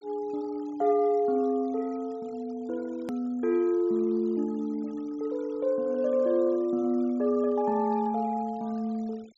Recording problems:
treble missing; nothing above 8 kHz
noise reduction artefacts; signal-to-artefact ratio 28 dB
click at an edit; at 3 s

